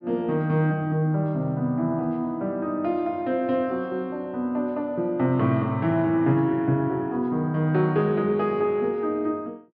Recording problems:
treble cut off; nothing above 5.5 kHz

